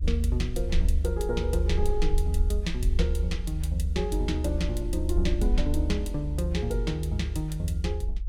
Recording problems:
low-frequency rumble; below 72 Hz, SNR -2 dB

